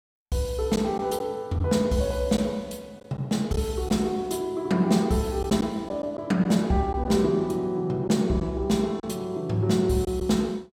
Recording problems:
lost packets; 3% of the sound replaced, filled with silence

